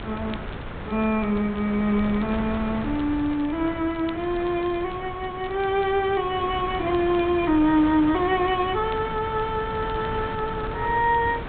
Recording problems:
low-pass filter; nothing above 4 kHz
wind noise; below 1 kHz, SNR 10 dB
crackling; vinyl, SNR 27 dB

